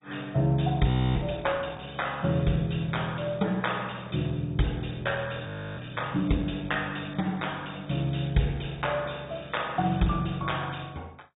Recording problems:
low-pass filter; nothing above 3.8 kHz
lossy codec; MP2, log-spectral distance 7 dB
frozen audio; at 1 s and at 5.5 s

